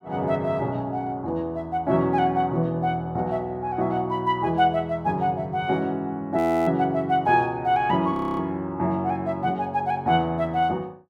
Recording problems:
audio freezing; at 6.5 s and at 8 s

